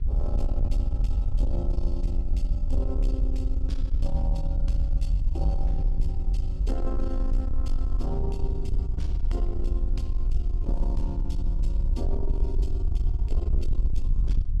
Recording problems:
distortion; soft clipping, signal-to-distortion ratio 11 dB
low-frequency rumble; below 54 Hz, SNR -8 dB
wind noise; below 130 Hz, SNR 16 dB

